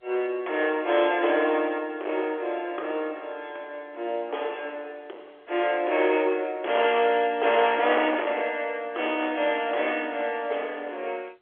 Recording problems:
telephone audio; 320 Hz to 3.4 kHz, G.711
distortion; hard clipping, uneven, signal-to-distortion ratio 13 dB

